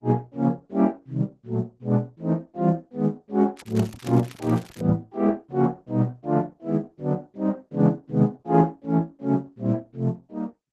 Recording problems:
lossy codec; Opus, then Opus, log-spectral distance 3 dB
crackling; from 3.5 to 5 s; loose cable, SNR 21 dB

